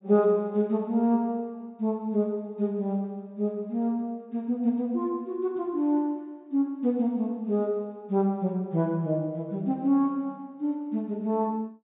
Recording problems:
low-pass filter; nothing above 4 kHz

